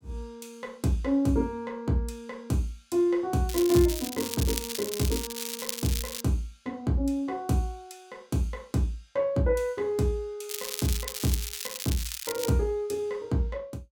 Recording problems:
crackling; from 3.5 to 6 s and from 10 to 12 s; loose cable, SNR 5 dB

